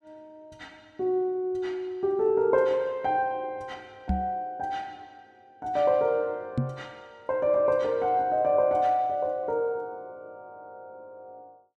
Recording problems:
knock on the microphone; at 4 s and at 6.5 s; peak +3 dB vs average level

